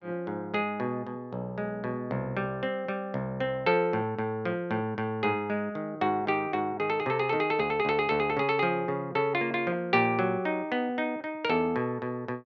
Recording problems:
none

